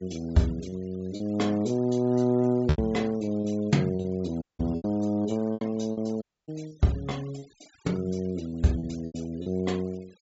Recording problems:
low-pass filter; nothing above 8 kHz
denoising artefacts; signal-to-artefact ratio 25 dB
packet loss; 9% of the sound replaced, filled with repeated pitch periods
dropout; at 4.5 s and at 6 s

